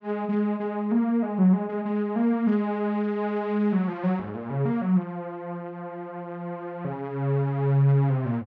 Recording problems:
none

